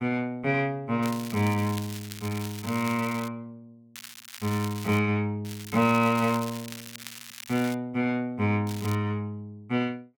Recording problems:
crackling; 4 times, first at 1 s; loose cable, SNR 14 dB

